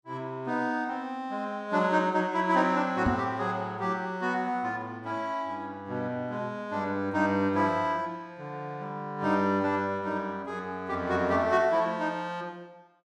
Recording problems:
microphone thump; at 3 s; peak +4 dB vs average level

